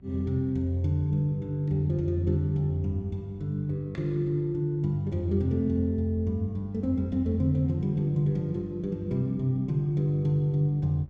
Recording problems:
hum; 50 Hz, harmonics up to 550 Hz, SNR 24 dB

